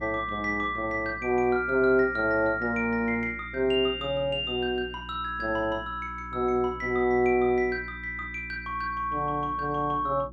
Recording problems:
hum; 60 Hz, harmonics up to 360 Hz, SNR 18 dB

